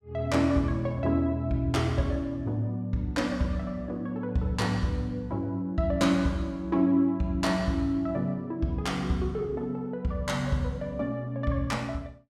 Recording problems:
none

